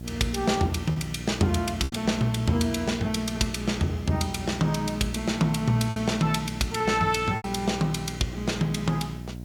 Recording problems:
hum; 60 Hz, harmonics up to 720 Hz, SNR 11 dB
background hiss; slope -1 dB per octave, SNR 30 dB
lost packets; 3% of the sound replaced, filled with repeated pitch periods

